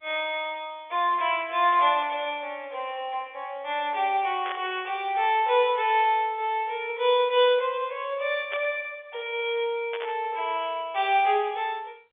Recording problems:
telephone audio; 340 Hz to 3.5 kHz, G.711
static burst; at 4.5 s, at 8.5 s and at 10 s; peak -6 dB vs average level

